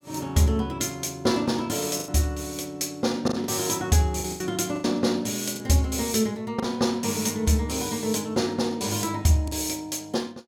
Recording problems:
packet loss; 5% of the sound replaced, filled with the last packet

